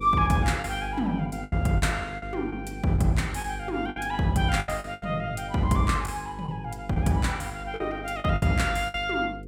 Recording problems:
hum; 50 Hz, harmonics up to 500 Hz, SNR 13 dB
lost packets; 8% of the sound replaced, filled with the last packet

